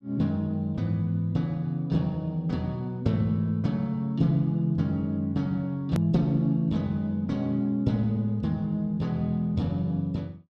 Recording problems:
edit click; at 6 s

